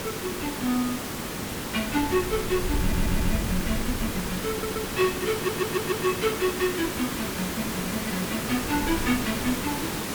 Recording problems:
hiss; SNR 2 dB
wind noise; below 88 Hz, SNR 7 dB
stutter; at 3 s, at 4.5 s and at 5.5 s

